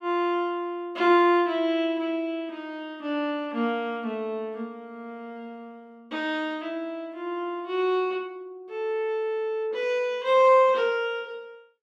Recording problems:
none

